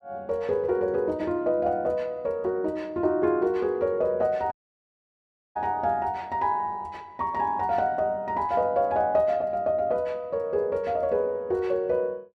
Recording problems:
dropout; at 4.5 s for 1 s

